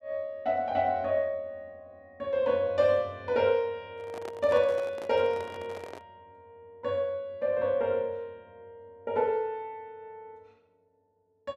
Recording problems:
handling noise; from 4 to 6 s; peak -9 dB vs average level

